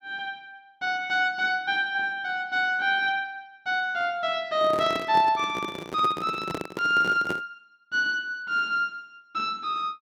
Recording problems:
microphone handling noise; from 4.5 to 7.5 s; peak -2 dB vs average level

